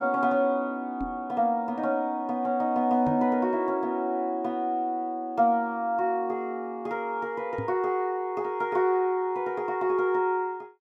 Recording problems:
microphone thump; at 1 s, at 3 s and at 7.5 s; peak -2 dB vs average level

